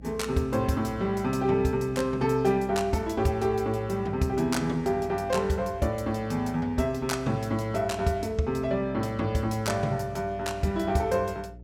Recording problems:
electrical hum; 60 Hz, harmonics up to 660 Hz, SNR 19 dB

